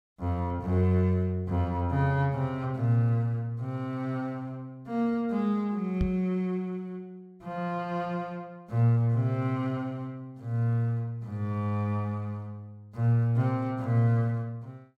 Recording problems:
microphone thump; at 6 s; peak +4 dB vs average level

